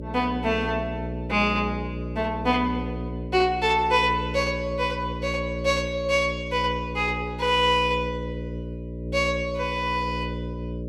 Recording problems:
hum; 60 Hz, harmonics up to 600 Hz, SNR 8 dB

